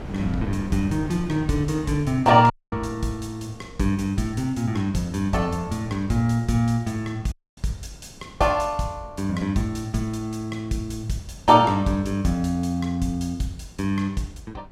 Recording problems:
wind on the microphone; below 280 Hz, SNR 18 dB
audio cutting out; at 2.5 s and at 7.5 s

